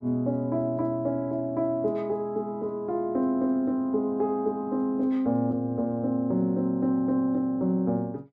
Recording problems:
none

